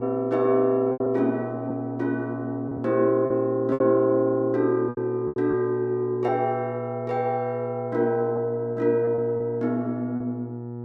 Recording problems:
electrical hum; 60 Hz, harmonics up to 960 Hz, SNR 10 dB
packet loss; 5% of the sound replaced, filled with repeated pitch periods

